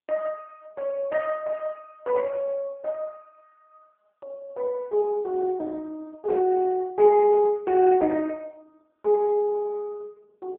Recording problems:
telephone audio; 110 Hz to 2.6 kHz, AMR-NB

